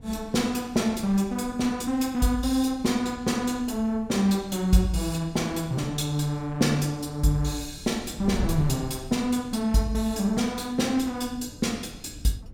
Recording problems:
wind on the microphone; below 130 Hz, SNR 17 dB

